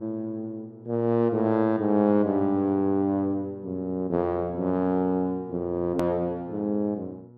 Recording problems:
electrical hum; 60 Hz, harmonics up to 960 Hz, SNR 24 dB
hard cut with a click; at 6 s

